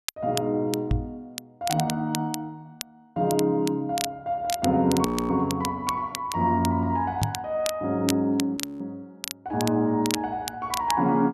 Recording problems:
crackle; vinyl, SNR 10 dB
microphone bump; at 1 s and at 7 s; peak +5 dB vs average level
frozen audio; at 5 s and at 8.5 s

